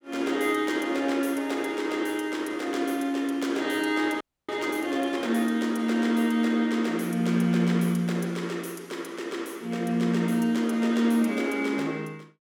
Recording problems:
audio freezing; at 4 s

